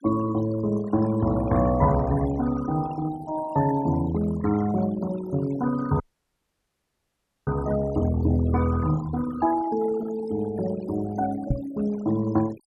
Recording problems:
denoising artefacts; signal-to-artefact ratio 14 dB
dropout; at 6 s for 1.5 s
microphone bump; at 12 s; peak +4 dB vs average level

